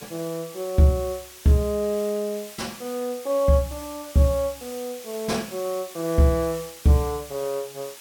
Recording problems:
hiss; slope +1 dB per octave, SNR 16 dB

